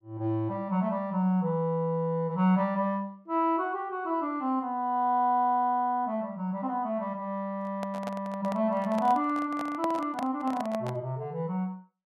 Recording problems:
handling noise; from 7.5 to 11 s; peak -3 dB vs average level

